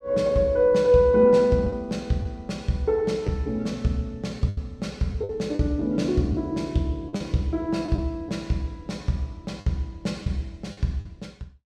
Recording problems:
packet loss; 5% of the sound replaced, filled with the last packet

